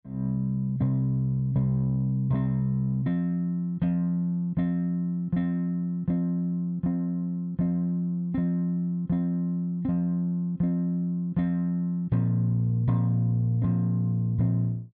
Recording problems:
none

